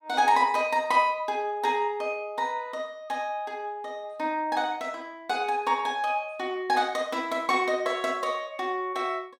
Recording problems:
none

